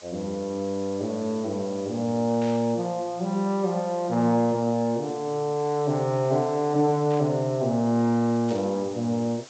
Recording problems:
treble cut off; nothing above 8 kHz
background hiss; slope 0 dB per octave, SNR 21 dB
burst of static; at 2.5 s, at 7 s and at 8.5 s; peak -13 dB vs average level

